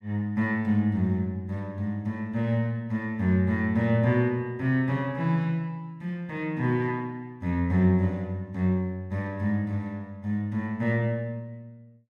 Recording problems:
none

